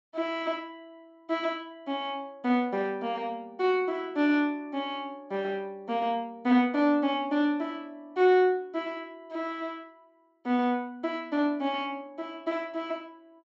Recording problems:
treble cut off; nothing above 8 kHz

